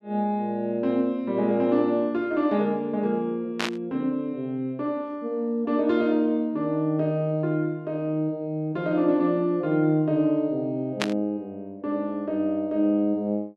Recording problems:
static burst; at 3.5 s and at 11 s; peak +3 dB vs average level

